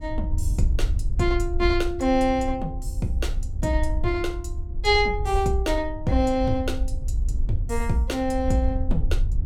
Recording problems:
wind on the microphone; below 68 Hz, SNR 4 dB

